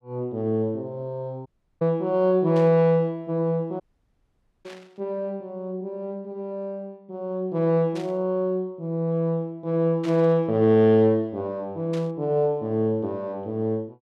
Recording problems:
dropout; at 1.5 s and at 4 s for 1 s
static burst; 5 times, first at 2.5 s; peak -12 dB vs average level

